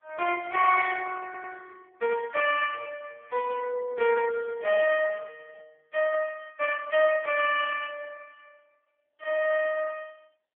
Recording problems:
phone line; 390 Hz to 3.1 kHz, AMR-NB
stutter; at 1.5 s

